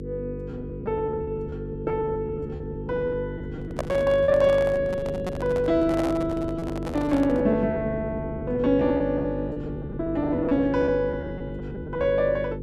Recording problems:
hum; 50 Hz, harmonics up to 550 Hz, SNR 8 dB
packet loss; 16% of the sound replaced, filled with repeated pitch periods
handling noise; from 3.5 to 7.5 s; peak +1 dB vs average level

